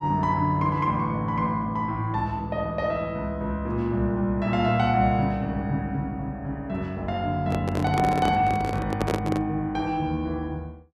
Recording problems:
handling noise; from 7.5 to 9.5 s; peak +2 dB vs average level

